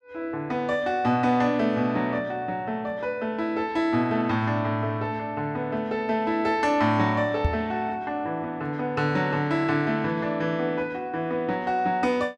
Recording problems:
microphone thump; at 7.5 s; peak +5 dB vs average level

